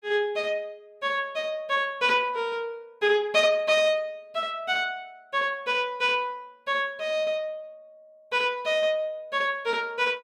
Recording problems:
none

